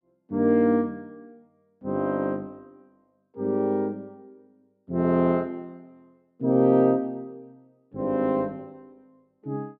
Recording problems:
none

